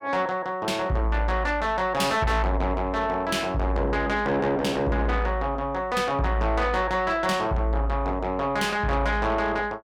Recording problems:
distorted audio; soft clipping, signal-to-distortion ratio 11 dB

